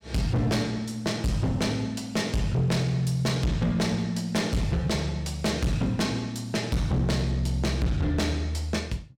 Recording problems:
distortion; hard clipping, signal-to-distortion ratio 6 dB

